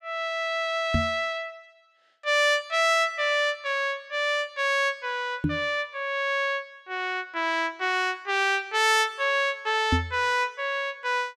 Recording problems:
knock on the microphone; at 1 s, at 5.5 s and at 10 s; peak +4 dB vs average level

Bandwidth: 14.5 kHz